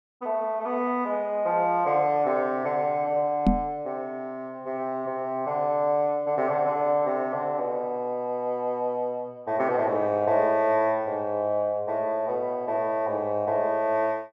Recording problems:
microphone thump; at 3.5 s; peak +8 dB vs average level

